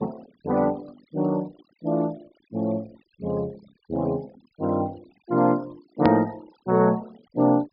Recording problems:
treble missing; nothing above 5.5 kHz
denoising artefacts; signal-to-artefact ratio 25 dB
hard cut with a click; at 6 s

